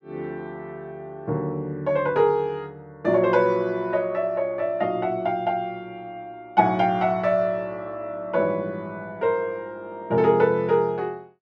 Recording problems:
none

